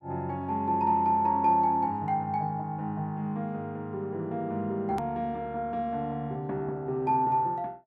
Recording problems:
hard cut with a click; at 5 s

